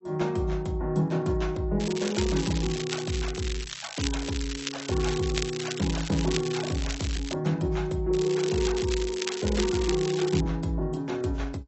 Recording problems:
lossy codec; AAC, log-spectral distance 7 dB, nothing above 7.8 kHz
crackling; from 2 to 7.5 s and from 8 to 10 s; loose cable, SNR 8 dB

